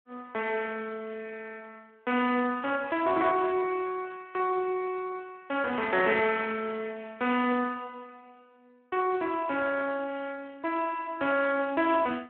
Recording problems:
telephone audio; 220 Hz to 2.8 kHz, Speex

